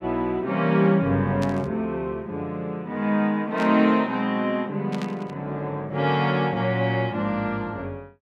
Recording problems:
static burst; at 1.5 s, at 3.5 s and at 5 s; peak -9 dB vs average level

